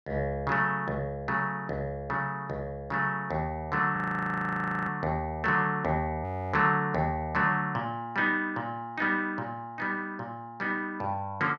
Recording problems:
audio freezing; at 4 s for 1 s and at 6 s

